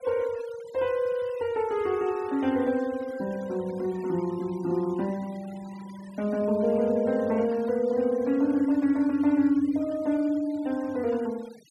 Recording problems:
denoising artefacts; signal-to-artefact ratio 23 dB

